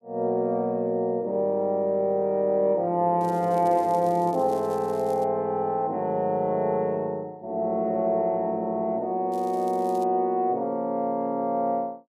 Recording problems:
crackling; from 3 to 5 s and at 9.5 s; loose cable, SNR 26 dB

